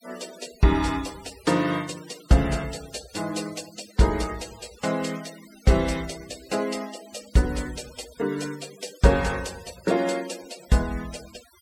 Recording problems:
noise reduction artefacts; signal-to-artefact ratio 18 dB

